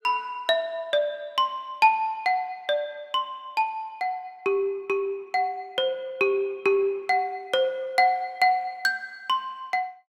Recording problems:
none

